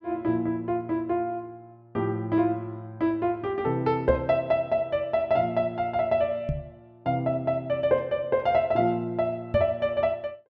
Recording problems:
knock on the microphone; at 4 s, at 6.5 s and at 9.5 s; peak +1 dB vs average level

